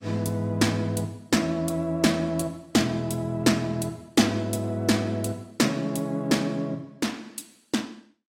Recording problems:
codec artefacts; AAC, log-spectral distance 3 dB, nothing above 16.5 kHz

